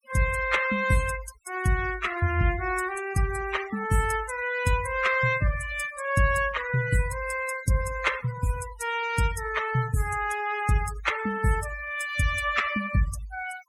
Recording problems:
denoising artefacts; signal-to-artefact ratio 13 dB

